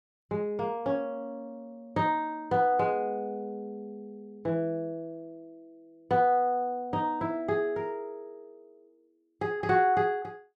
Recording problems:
none

